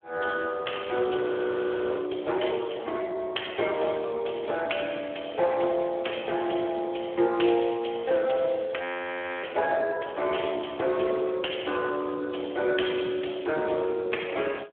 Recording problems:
phone line; 300 Hz to 3.3 kHz, Speex
audio freezing; at 1 s for 0.5 s and at 9 s for 0.5 s

